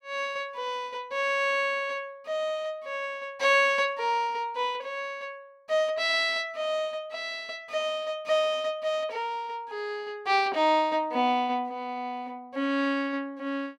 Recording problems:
none

